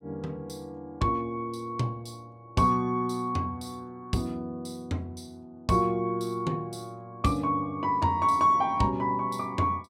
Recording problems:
none

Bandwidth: 16 kHz